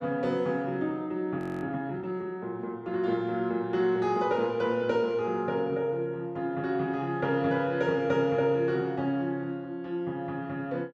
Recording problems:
frozen audio; at 1.5 s

